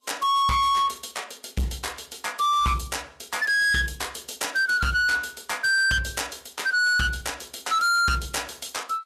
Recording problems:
lossy codec; Vorbis, log-spectral distance 6 dB, nothing above 13.8 kHz
distortion; hard clipping, signal-to-distortion ratio 8 dB

